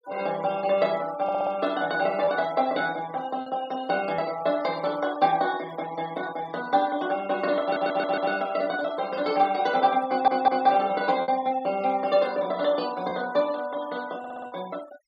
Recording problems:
denoising artefacts; signal-to-artefact ratio 19 dB
packet loss; 1.7% of the sound replaced, filled with repeated pitch periods
stutter; 4 times, first at 1 s

